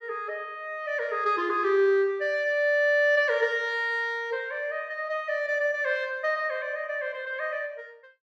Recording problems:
none

